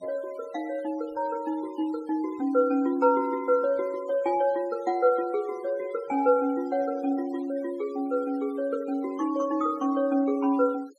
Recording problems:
denoising artefacts; signal-to-artefact ratio 24 dB

